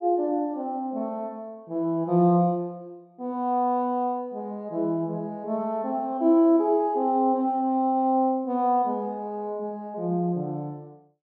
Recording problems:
none

